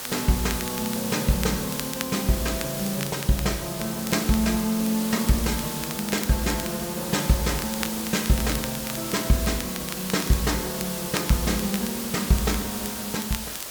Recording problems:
background hiss; slope -1 dB per octave, SNR 5 dB
crackling; vinyl, SNR 12 dB

